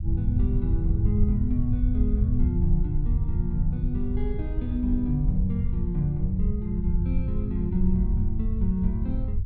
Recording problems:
low-frequency rumble; below 86 Hz, SNR -2 dB

